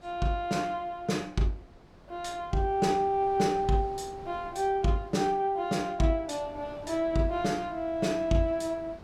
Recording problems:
wind noise; below 660 Hz, SNR 21 dB

